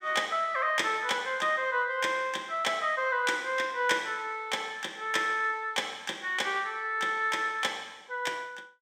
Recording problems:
none

